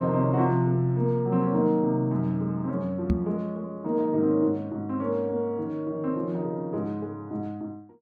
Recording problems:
knock on the microphone; at 3 s; peak +5 dB vs average level

